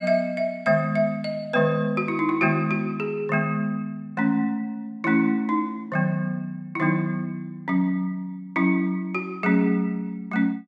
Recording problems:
none

